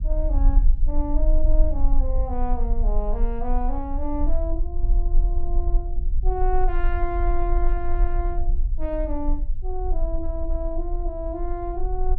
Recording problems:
low-frequency rumble; below 40 Hz, strongest tone 24 Hz, SNR -5 dB

